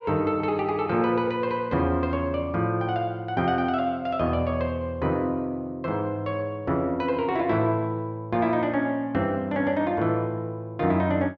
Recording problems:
none

